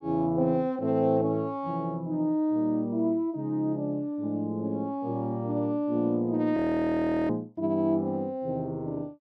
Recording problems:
frozen audio; at 6.5 s for 0.5 s

